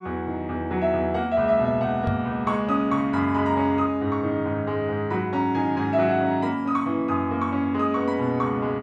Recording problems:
knock on the microphone; at 2 s; peak 0 dB vs average level

